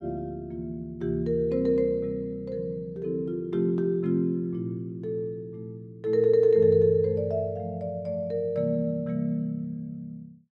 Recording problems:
none

